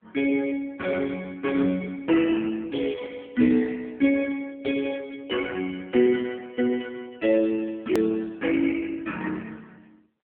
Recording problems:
phone line; 220 Hz to 3.3 kHz, AMR-NB
hard cut with a click; at 8 s

